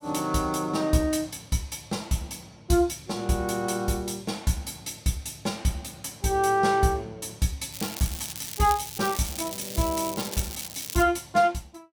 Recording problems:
crackling; from 7.5 to 11 s; loose cable, SNR 8 dB

